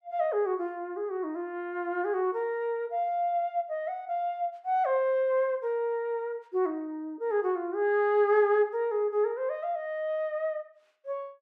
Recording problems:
none

